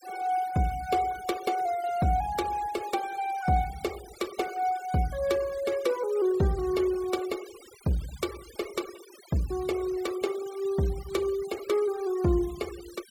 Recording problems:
noise reduction artefacts; signal-to-artefact ratio 18 dB

